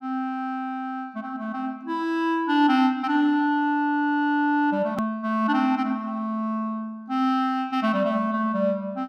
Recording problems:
hard cut with a click; at 5 s

